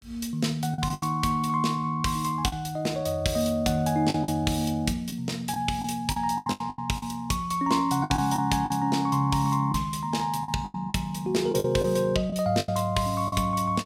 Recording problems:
packet loss; 9% of the sound replaced, filled with the last packet

